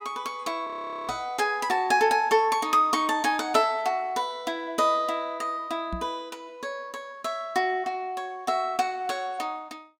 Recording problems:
audio freezing; at 0.5 s
knock on the microphone; at 1 s and at 6 s; peak -4 dB vs average level

